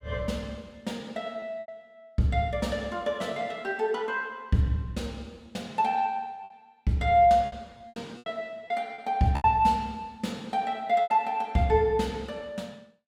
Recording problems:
lost packets; 5% of the sound replaced, filled with repeated pitch periods

